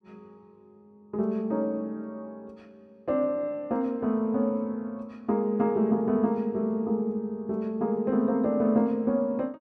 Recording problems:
none

